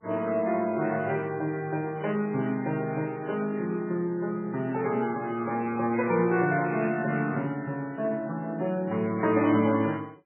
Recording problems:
lossy codec; MP3, then MP3, log-spectral distance 2 dB, nothing above 2.5 kHz

